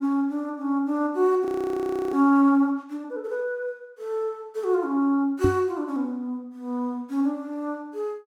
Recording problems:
frozen audio; at 1.5 s for 0.5 s
microphone bump; at 5.5 s; peak +6 dB vs average level

